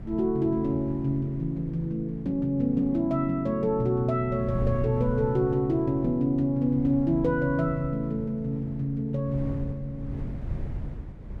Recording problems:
wind on the microphone; below 150 Hz, SNR 13 dB

